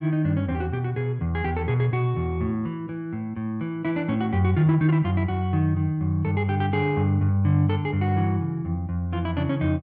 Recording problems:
none

